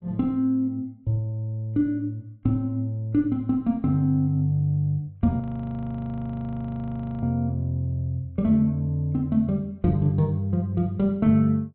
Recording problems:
low-pass filter; nothing above 4 kHz
audio freezing; at 5.5 s for 2 s

